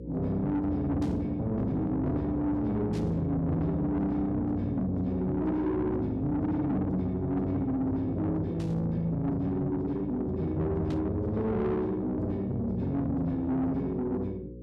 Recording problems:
distorted audio; soft clipping, signal-to-distortion ratio 11 dB
hum; 60 Hz, harmonics up to 540 Hz, SNR 12 dB
static burst; 4 times, first at 1 s; peak -13 dB vs average level

